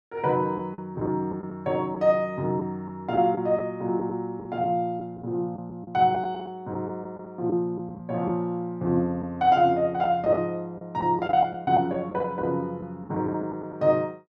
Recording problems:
lost packets; 6% of the sound replaced, filled with the last packet

